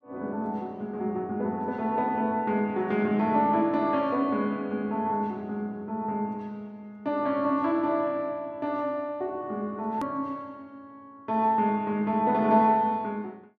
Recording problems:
click at an edit; at 10 s

